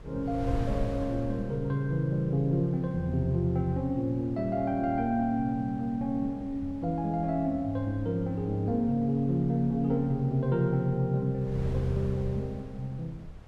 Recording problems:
wind noise; below 100 Hz, SNR 15 dB

